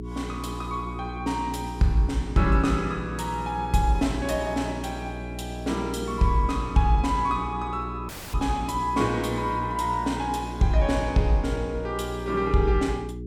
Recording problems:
hum; 60 Hz, harmonics up to 420 Hz, SNR 9 dB
audio cutting out; at 8 s

